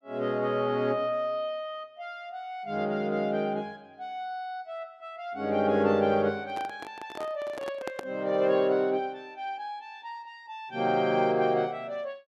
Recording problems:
microphone handling noise; from 6.5 to 8 s; peak -3 dB vs average level

